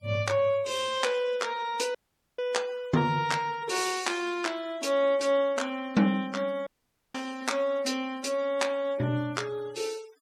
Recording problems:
noise reduction artefacts; signal-to-artefact ratio 22 dB
audio cutting out; at 2 s and at 6.5 s

